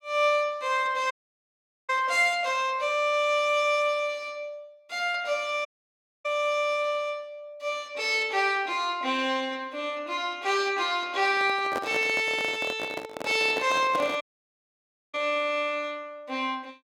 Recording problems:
dropout; at 1 s for 1 s, at 5.5 s for 0.5 s and at 14 s for 1 s
handling noise; from 11 to 15 s; peak -2 dB vs average level

